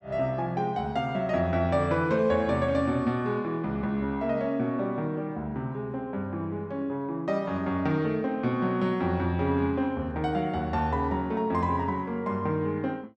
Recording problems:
none

